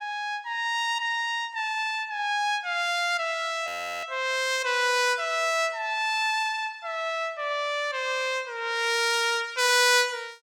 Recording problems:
frozen audio; at 3.5 s

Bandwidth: 17 kHz